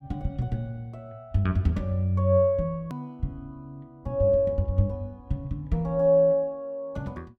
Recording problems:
click at an edit; at 3 s

